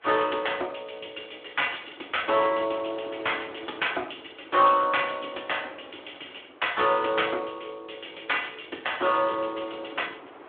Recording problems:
phone line; 260 Hz to 3.5 kHz, Speex
wind on the microphone; below 1.3 kHz, SNR 23 dB

